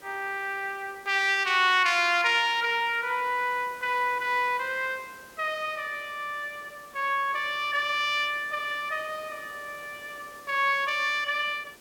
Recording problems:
background hiss; slope -4 dB per octave, SNR 24 dB

